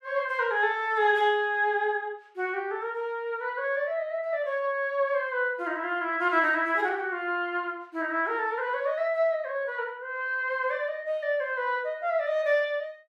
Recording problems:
none

